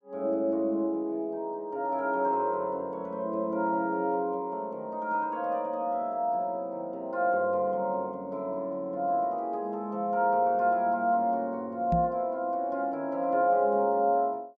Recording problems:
microphone bump; at 12 s; peak +3 dB vs average level

